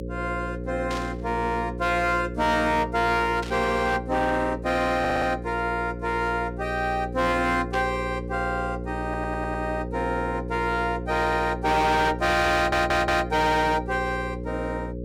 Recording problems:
distortion; hard clipping, signal-to-distortion ratio 10 dB
hum; 60 Hz, harmonics up to 540 Hz, SNR 8 dB
burst of static; at 1 s, at 3.5 s and at 7.5 s; peak -7 dB vs average level
audio stuttering; at 5 s, at 9 s and at 13 s

